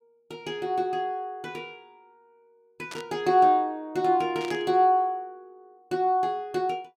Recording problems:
static burst; at 3 s and at 4.5 s; peak -10 dB vs average level

